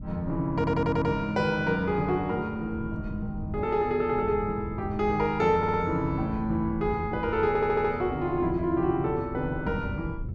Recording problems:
wind on the microphone; below 150 Hz, SNR 12 dB
stutter; at 0.5 s, at 5.5 s and at 7.5 s

